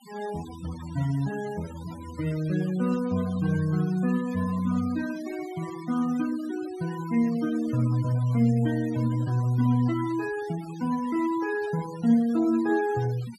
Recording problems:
denoising artefacts; signal-to-artefact ratio 19 dB

